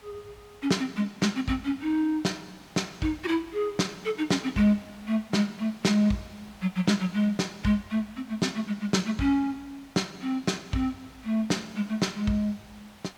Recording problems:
background hiss; SNR 24 dB

